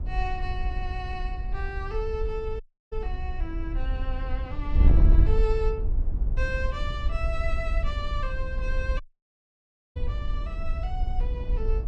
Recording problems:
wind on the microphone; below 60 Hz, SNR -6 dB
dropout; at 2.5 s and at 9 s for 1 s

